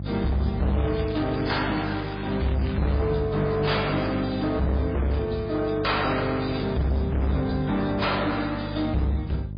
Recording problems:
codec artefacts; MP3, then AAC, log-spectral distance 5 dB
distortion; hard clipping, signal-to-distortion ratio 7 dB
hum; 50 Hz, harmonics up to 550 Hz, SNR 8 dB
crackle; from 0.5 to 3 s; loose cable, SNR 16 dB

